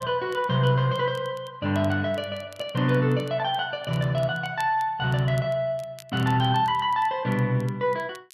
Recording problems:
crackle; vinyl, SNR 27 dB

